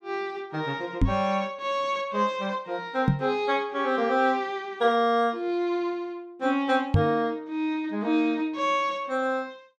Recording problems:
microphone bump; at 1 s, at 3 s and at 7 s; peak +8 dB vs average level

